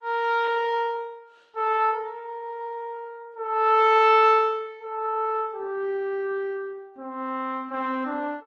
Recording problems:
lossy compression; Opus, log-spectral distance 2 dB

